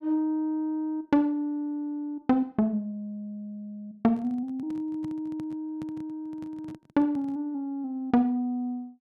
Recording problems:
microphone handling noise; from 4 to 7.5 s; peak -9 dB vs average level

